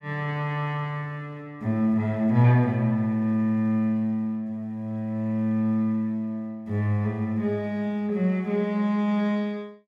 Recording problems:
none

